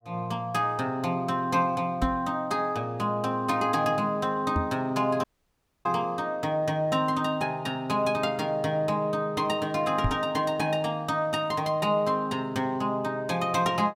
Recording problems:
microphone thump; at 2 s, at 4.5 s and at 10 s; peak +4 dB vs average level
dropout; at 5 s for 0.5 s

